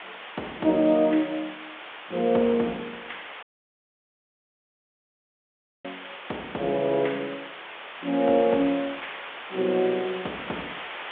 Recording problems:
telephone audio; 220 Hz to 3.7 kHz, G.726
background hiss; SNR 13 dB
dropout; at 3.5 s for 2.5 s

